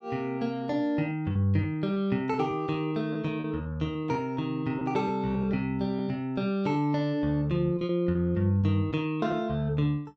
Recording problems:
packet loss; 6% of the sound replaced, filled with repeated pitch periods

